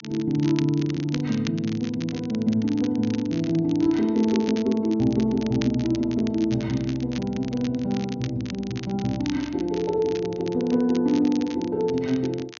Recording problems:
low-pass filter; nothing above 6.7 kHz
crackle; vinyl, SNR 17 dB

